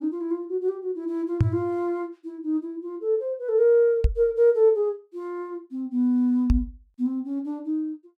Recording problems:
microphone thump; at 1.5 s, at 4 s and at 6.5 s; peak +8 dB vs average level

